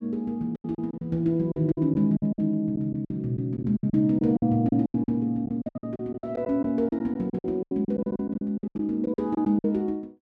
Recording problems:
lost packets; 17% of the sound replaced, filled with silence

